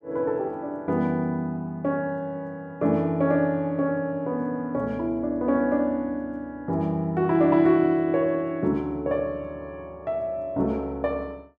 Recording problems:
none

